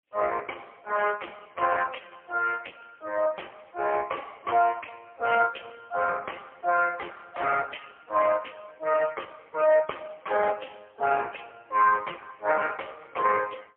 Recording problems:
telephone audio; 370 Hz to 2.1 kHz, AMR-NB, then MP3

